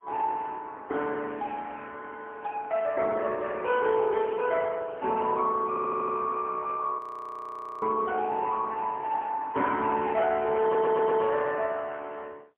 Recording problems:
phone line; 240 Hz to 3.4 kHz, AMR-NB, then MP3
audio stuttering; at 5.5 s and at 11 s
frozen audio; at 7 s for 1 s

